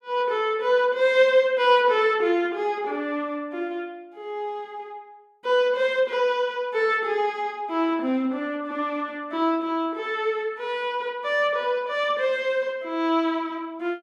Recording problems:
none

